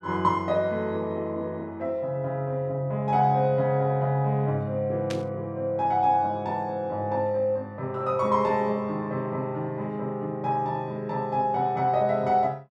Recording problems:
static burst; at 5 s; peak -5 dB vs average level

